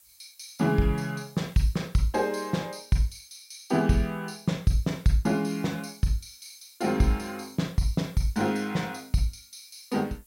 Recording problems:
background hiss; slope +2 dB per octave, SNR 27 dB

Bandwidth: 16 kHz